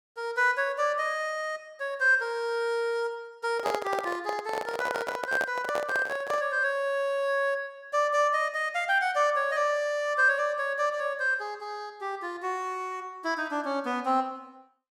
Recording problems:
handling noise; from 3.5 to 6.5 s; peak +1 dB vs average level

